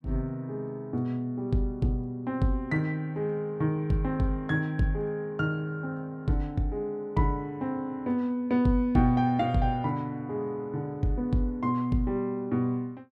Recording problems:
none

